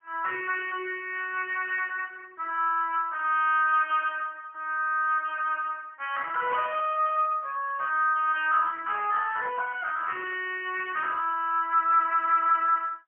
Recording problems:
phone line; 340 Hz to 3.3 kHz, AMR-NB, then MP3

